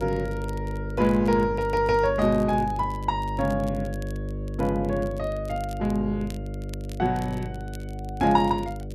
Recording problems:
hum; 50 Hz, harmonics up to 600 Hz, SNR 8 dB
crackle; vinyl, SNR 26 dB

